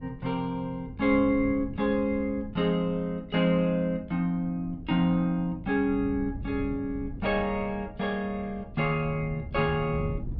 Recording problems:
wind on the microphone; below 140 Hz, SNR 14 dB

